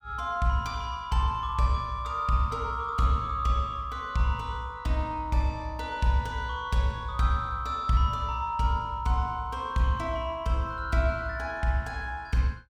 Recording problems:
none

